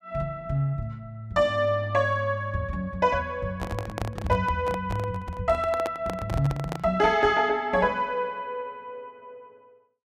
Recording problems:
microphone handling noise; from 3.5 to 7 s; peak -2 dB vs average level

